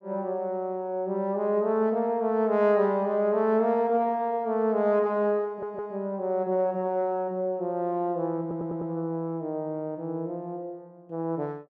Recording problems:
stutter; at 5.5 s and at 8.5 s

